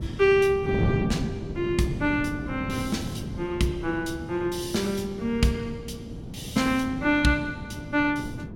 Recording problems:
wind noise; below 270 Hz, SNR 7 dB

